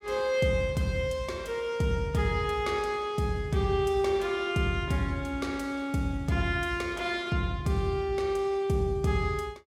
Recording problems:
none

